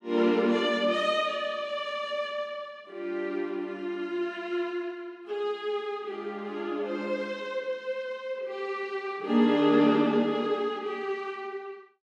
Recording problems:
none

